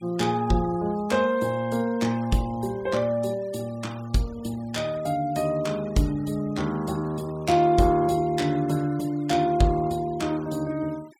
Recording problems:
noise reduction artefacts; signal-to-artefact ratio 23 dB

